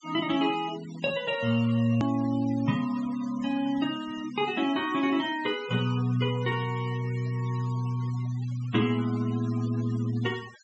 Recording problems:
low-pass filter; nothing above 8 kHz
noise reduction artefacts; signal-to-artefact ratio 18 dB
hard cut with a click; at 2 s

